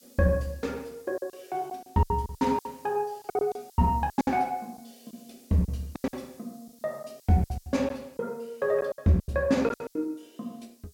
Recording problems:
hiss; SNR 27 dB
packet loss; 14% of the sound replaced, filled with silence

